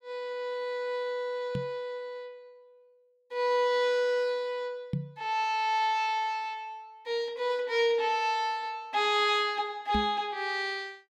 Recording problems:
microphone bump; at 1.5 s, at 5 s and at 10 s; peak +1 dB vs average level

